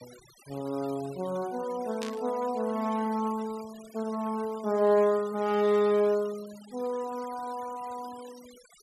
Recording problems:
noise reduction artefacts; signal-to-artefact ratio 21 dB
static burst; at 2 s; peak -5 dB vs average level

